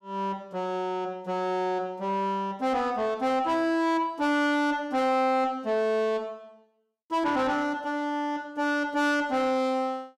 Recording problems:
distortion; soft clipping, signal-to-distortion ratio 12 dB

